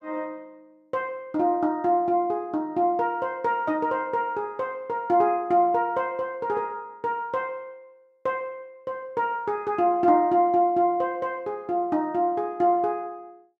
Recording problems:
none

